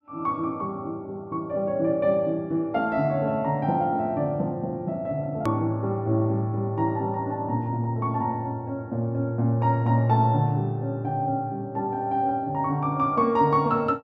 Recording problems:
click at an edit; at 5.5 s

